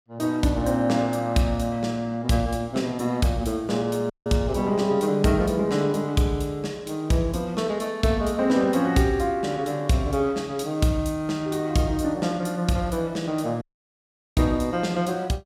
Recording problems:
audio cutting out; at 4 s and at 14 s for 1 s

